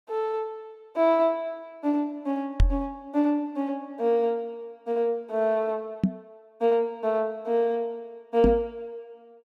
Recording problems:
microphone bump; at 2.5 s, at 6 s and at 8.5 s; peak +8 dB vs average level

